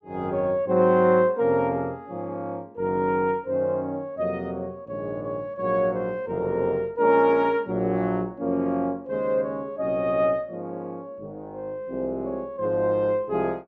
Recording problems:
none

